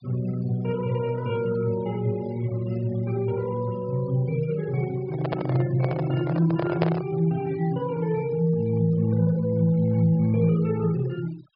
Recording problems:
treble cut off; nothing above 5.5 kHz
denoising artefacts; signal-to-artefact ratio 22 dB
microphone handling noise; from 5 to 7 s; peak +3 dB vs average level

